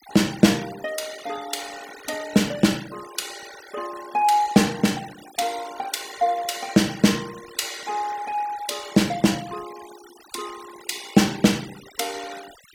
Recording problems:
denoising artefacts; signal-to-artefact ratio 17 dB

